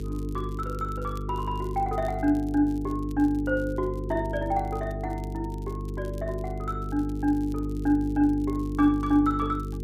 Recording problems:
electrical hum; 50 Hz, harmonics up to 450 Hz, SNR 6 dB
crackling; vinyl, SNR 28 dB

